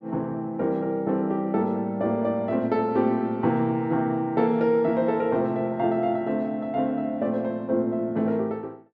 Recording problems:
none

